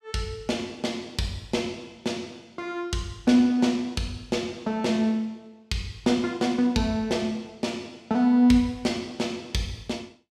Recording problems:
none

